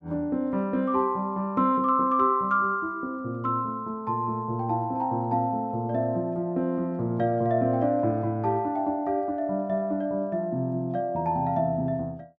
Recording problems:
none

